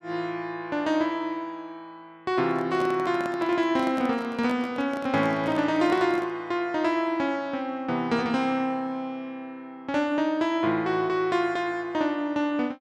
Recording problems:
microphone handling noise; from 2.5 to 6.5 s; peak -6 dB vs average level

